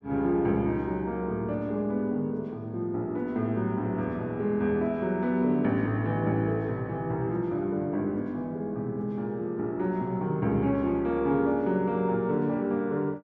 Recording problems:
none

